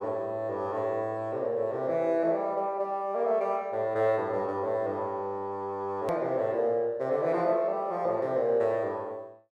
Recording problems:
click at an edit; at 6 s

